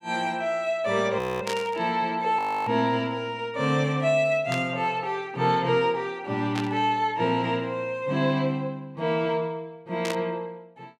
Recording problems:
frozen audio; at 1 s and at 2.5 s
static burst; 4 times, first at 1.5 s; peak -3 dB vs average level

